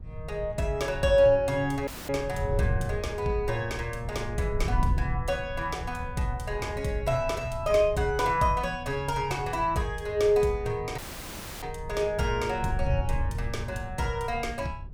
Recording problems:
wind noise; below 100 Hz, SNR 8 dB
dropout; at 2 s and at 11 s for 0.5 s

